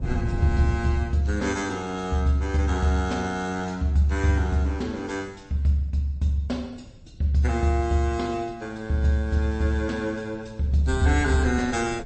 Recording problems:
lossy compression; MP3, log-spectral distance 2 dB, nothing above 8.2 kHz
wind noise; below 140 Hz, SNR 8 dB

